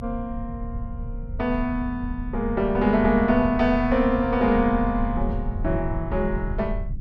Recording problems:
rumble; below 92 Hz, strongest tone 34 Hz, SNR 9 dB

